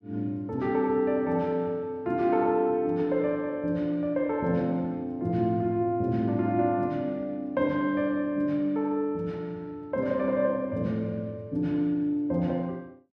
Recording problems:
none

